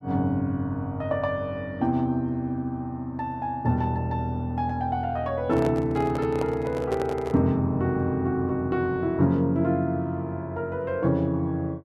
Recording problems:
microphone handling noise; from 5.5 to 7.5 s; peak -2 dB vs average level

